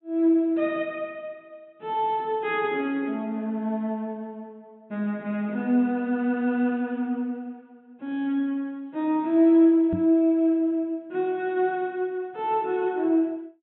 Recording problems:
treble cut off; nothing above 3.8 kHz
knock on the microphone; at 10 s; peak 0 dB vs average level

